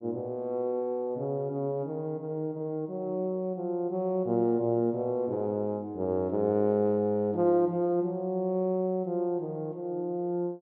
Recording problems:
none

